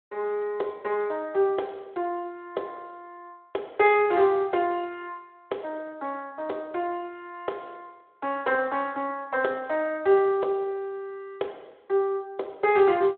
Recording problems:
telephone audio; 320 Hz to 3.8 kHz, Speex

